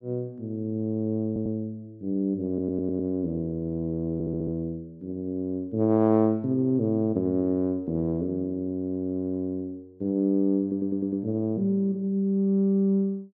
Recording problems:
audio stuttering; 4 times, first at 1.5 s

